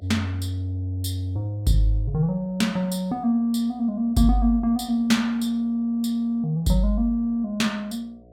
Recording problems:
electrical hum; 60 Hz, harmonics up to 720 Hz, SNR 29 dB

